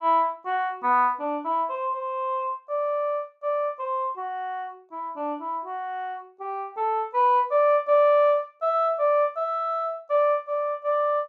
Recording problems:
none

